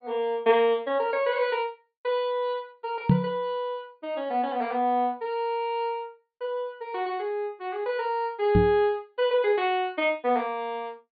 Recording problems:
treble missing; nothing above 4.7 kHz
knock on the microphone; at 3 s and at 8.5 s; peak +10 dB vs average level

